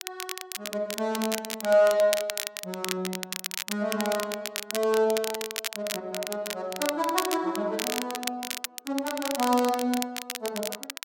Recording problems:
crackle; vinyl, SNR 5 dB

